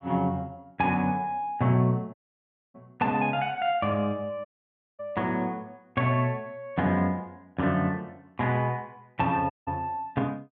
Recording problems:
dropout; at 2 s for 0.5 s, at 4.5 s for 0.5 s and at 9.5 s

